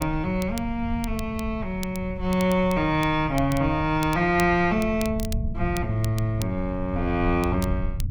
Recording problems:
low-frequency rumble; below 100 Hz, SNR 9 dB
crackle; vinyl, SNR 17 dB

